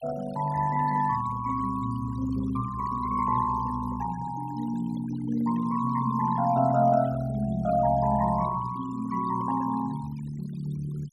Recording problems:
noise reduction artefacts; signal-to-artefact ratio 18 dB

